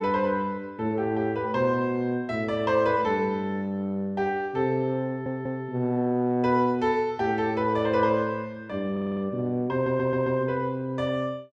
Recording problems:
stutter; at 5 s, at 9 s and at 9.5 s

